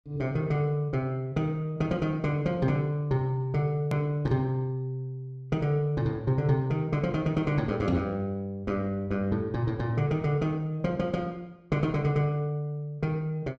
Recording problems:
click at an edit; at 4 s

